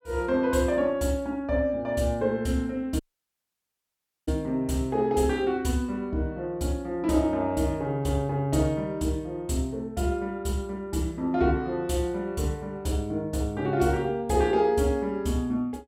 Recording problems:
dropout; at 3 s for 1.5 s

